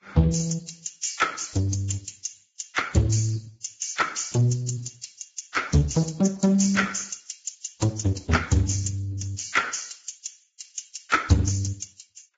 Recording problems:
codec artefacts; Speex, then Vorbis, log-spectral distance 7 dB, nothing above 7.3 kHz

